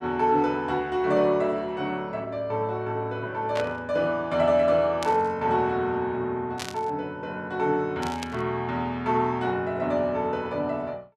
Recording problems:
burst of static; 4 times, first at 3.5 s; peak -3 dB vs average level

